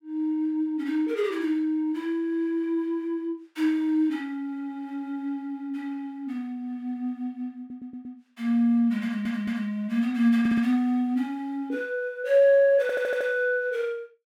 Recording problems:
audio stuttering; 4 times, first at 7.5 s

